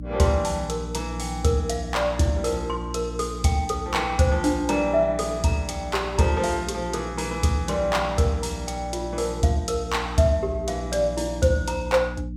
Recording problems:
electrical hum; 60 Hz, harmonics up to 300 Hz, SNR 10 dB

